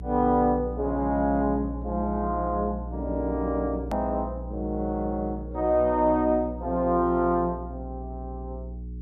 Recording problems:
hum; 60 Hz, harmonics up to 420 Hz, SNR 10 dB
click at an edit; at 4 s

